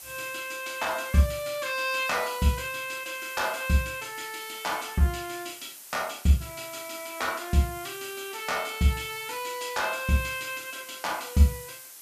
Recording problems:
hiss; slope +1 dB per octave, SNR 14 dB

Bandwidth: 14.5 kHz